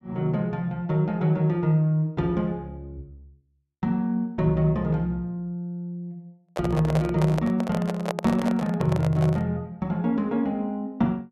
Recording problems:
microphone handling noise; from 6.5 to 9.5 s; peak +1 dB vs average level

